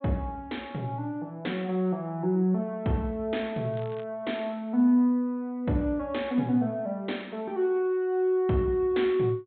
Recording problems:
treble cut off; nothing above 4 kHz
crackling; at 3.5 s; loose cable, SNR 27 dB

